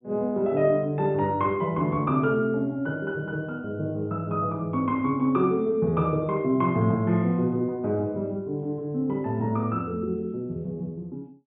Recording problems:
low-pass filter; nothing above 3.7 kHz

